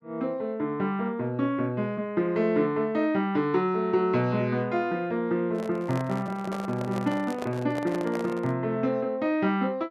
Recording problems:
microphone handling noise; from 5.5 to 8.5 s; peak -4 dB vs average level

